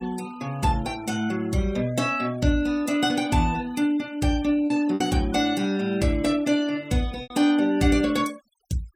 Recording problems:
denoising artefacts; signal-to-artefact ratio 23 dB
packet loss; 2% of the sound replaced, filled with repeated pitch periods

